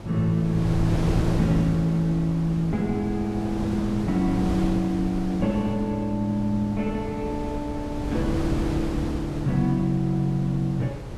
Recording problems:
wind on the microphone; below 350 Hz, SNR 6 dB

